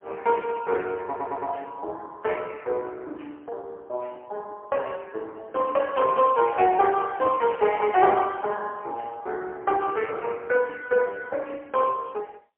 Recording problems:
phone line; 320 Hz to 2.8 kHz, AMR-NB, then MP3
stutter; at 1 s

